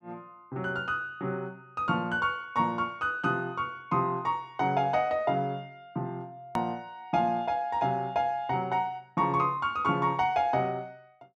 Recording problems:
edit click; at 6.5 s

